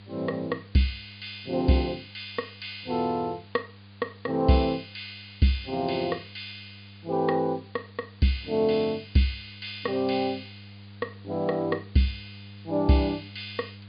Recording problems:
treble cut off; nothing above 4.9 kHz
hum; 50 Hz, harmonics up to 500 Hz, SNR 21 dB
background hiss; SNR 27 dB

